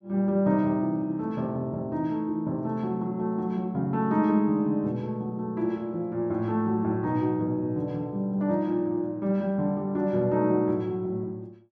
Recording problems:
none

